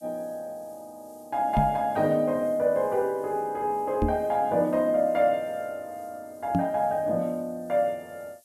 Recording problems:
hiss; SNR 29 dB
microphone thump; at 1.5 s, at 4 s and at 6.5 s; peak +4 dB vs average level

